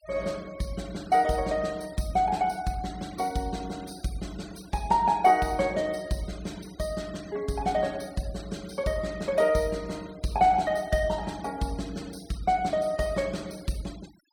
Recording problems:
denoising artefacts; signal-to-artefact ratio 22 dB

